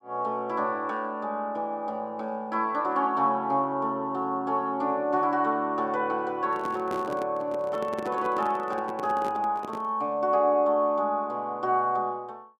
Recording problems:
microphone handling noise; from 6.5 to 10 s; peak -4 dB vs average level

